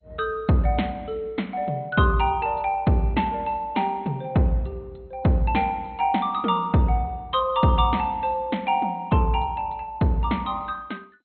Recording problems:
lossy codec; MP2, log-spectral distance 2 dB, nothing above 3.6 kHz

